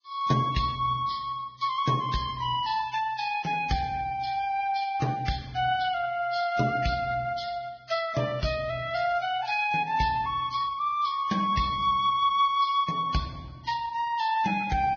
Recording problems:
codec artefacts; Vorbis, log-spectral distance 3 dB, nothing above 5.7 kHz

